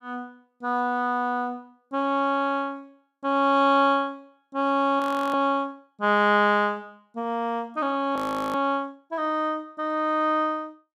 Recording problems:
frozen audio; at 5 s and at 8 s

